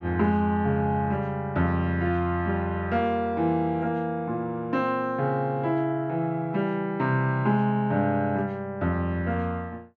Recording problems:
none

